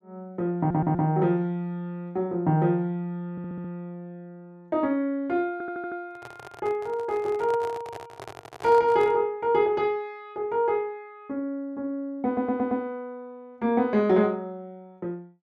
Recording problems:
stutter; 4 times, first at 0.5 s
microphone handling noise; from 6 to 9 s; peak -9 dB vs average level

